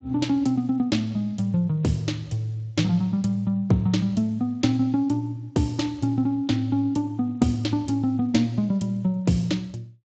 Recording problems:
lossy codec; Speex, log-spectral distance 2 dB, nothing above 7.6 kHz

